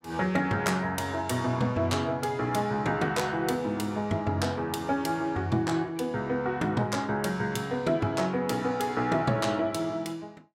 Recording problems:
none

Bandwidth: 16 kHz